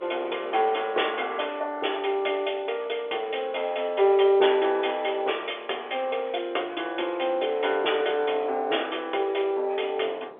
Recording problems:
telephone audio; 320 Hz to 3.5 kHz, G.711
wind on the microphone; below 770 Hz, SNR 22 dB

